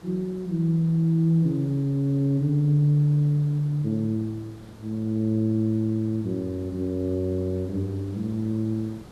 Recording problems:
hiss; slope -6 dB per octave, SNR 22 dB

